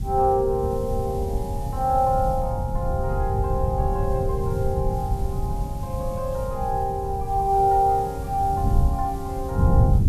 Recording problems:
background hiss; slope +1 dB per octave, SNR 24 dB
wind noise; below 120 Hz, SNR 3 dB

